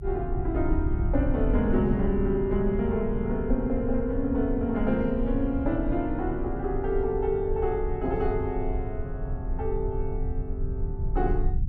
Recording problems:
rumble; below 78 Hz, SNR 4 dB

